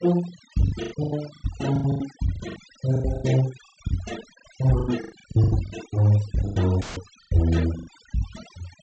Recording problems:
treble cut off; nothing above 8 kHz
noise reduction artefacts; signal-to-artefact ratio 16 dB
lost packets; 17% of the sound replaced, filled with the last packet
audio cutting out; at 7 s; filled with static

